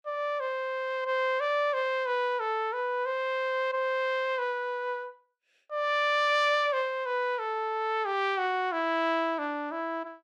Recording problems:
none

